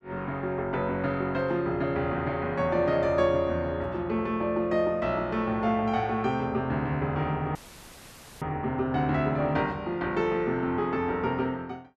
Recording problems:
dropout; at 7.5 s for 1 s; filled with static

